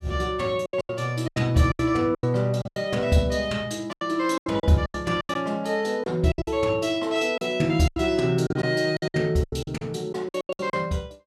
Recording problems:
lost packets; 15% of the sound replaced, filled with silence

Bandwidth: 15 kHz